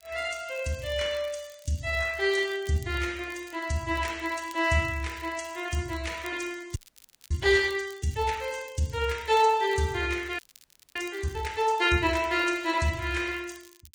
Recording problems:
codec artefacts; Vorbis, log-spectral distance 4 dB
crackle; vinyl, SNR 25 dB
frozen audio; at 7 s for 0.5 s and at 10 s for 0.5 s

